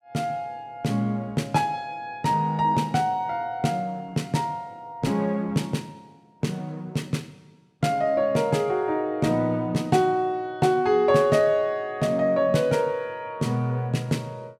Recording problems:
none

